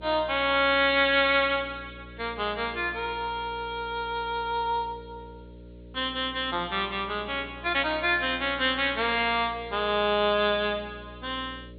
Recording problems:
low-pass filter; nothing above 4.2 kHz
hum; 60 Hz, harmonics up to 600 Hz, SNR 20 dB
hiss; SNR 42 dB

